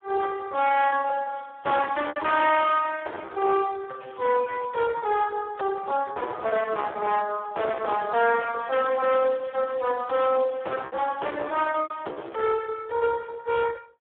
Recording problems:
phone line; 320 Hz to 3.4 kHz, Speex
distortion; hard clipping, uneven, signal-to-distortion ratio 8 dB
lost packets; 15% of the sound replaced, filled with repeated pitch periods
crackling; at 4 s, at 6.5 s and from 8 to 12 s; loose cable, SNR 27 dB

